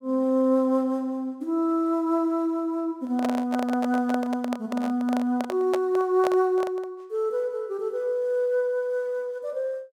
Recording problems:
microphone handling noise; from 3 to 7 s; peak 0 dB vs average level

